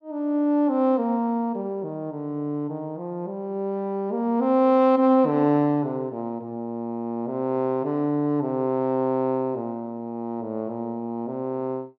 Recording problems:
none

